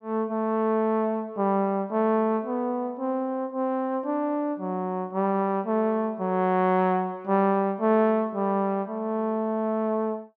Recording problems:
none

